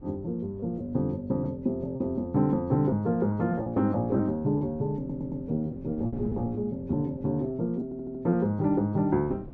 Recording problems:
wind on the microphone; below 240 Hz, SNR 20 dB
packet loss; 5% of the sound replaced, filled with repeated pitch periods
stutter; at 5 s and at 8 s

